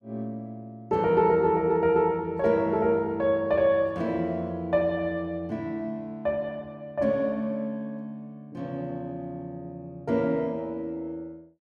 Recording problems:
none

